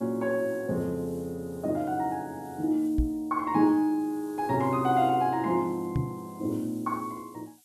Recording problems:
hiss; slope +7 dB per octave, SNR 26 dB
microphone thump; at 3 s and at 6 s; peak +4 dB vs average level

